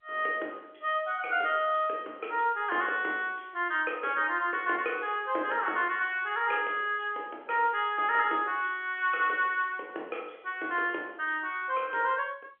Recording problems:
phone line; 320 Hz to 3.3 kHz, G.711

